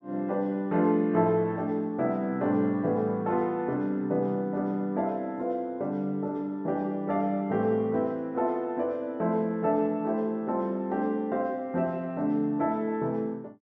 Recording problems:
none

